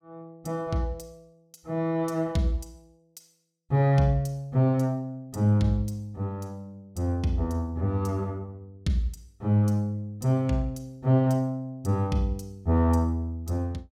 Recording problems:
none

